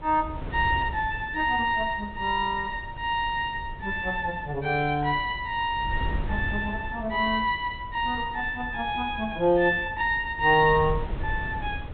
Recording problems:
treble missing; nothing above 4 kHz
wind on the microphone; below 120 Hz, SNR 12 dB

